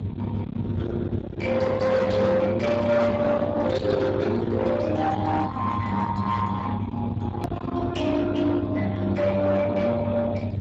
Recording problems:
lossy codec; Speex, log-spectral distance 3 dB
distorted audio; soft clipping, signal-to-distortion ratio 7 dB
hum; 50 Hz, harmonics up to 500 Hz, SNR 6 dB
rumble; below 590 Hz, SNR 9 dB
edit click; at 7.5 s

